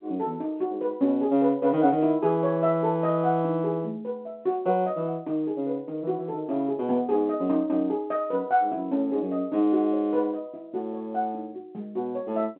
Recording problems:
phone line; 190 Hz to 3.8 kHz, G.711

